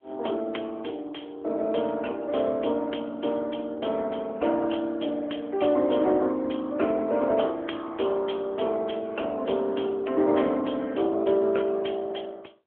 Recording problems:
phone line; 240 Hz to 3.4 kHz, AMR-NB

